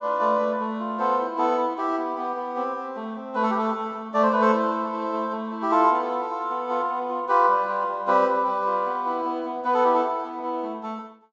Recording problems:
low-pass filter; nothing above 8 kHz

